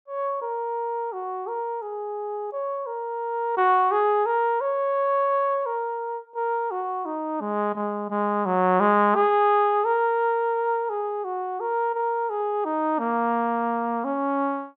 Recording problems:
none

